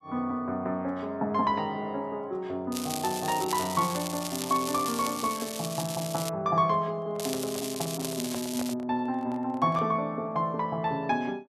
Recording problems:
crackling; from 2.5 to 6.5 s and from 7 to 8.5 s; loose cable, SNR 6 dB
handling noise; from 7 to 10 s; peak -5 dB vs average level

